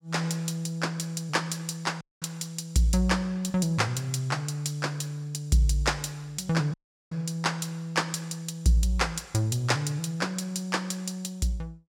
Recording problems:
audio cutting out; at 2 s and at 6.5 s

